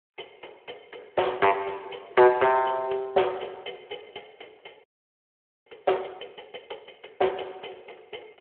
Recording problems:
telephone audio; 320 Hz to 3.3 kHz, Speex
audio freezing; at 5 s for 1 s

